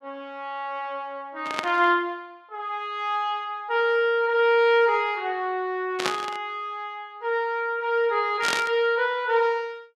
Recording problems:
burst of static; at 1.5 s, at 6 s and at 8.5 s; peak +2 dB vs average level

